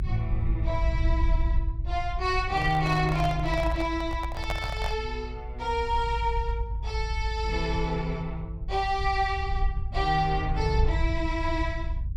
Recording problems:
low-frequency rumble; below 68 Hz, SNR 3 dB
microphone handling noise; from 2.5 to 5 s; peak +1 dB vs average level

